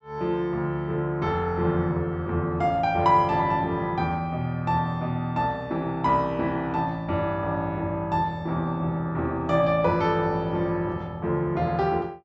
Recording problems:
low-pass filter; nothing above 8 kHz

